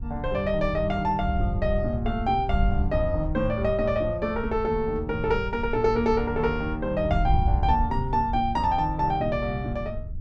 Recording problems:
wind on the microphone; below 86 Hz, SNR 6 dB

